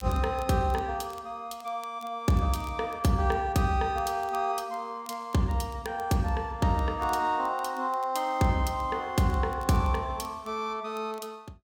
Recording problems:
crackle; vinyl, SNR 27 dB

